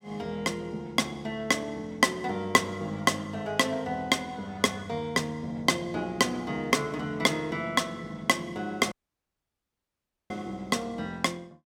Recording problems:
audio cutting out; at 9 s for 1.5 s

